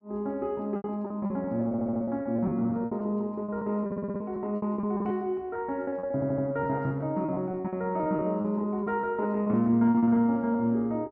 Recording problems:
packet loss; 17% of the sound replaced, filled with repeated pitch periods
stutter; at 1.5 s, at 4 s and at 6 s

